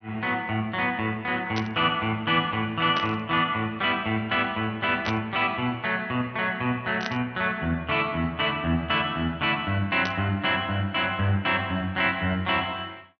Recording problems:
treble cut off; nothing above 6.1 kHz
burst of static; 5 times, first at 1.5 s; peak -2 dB vs average level

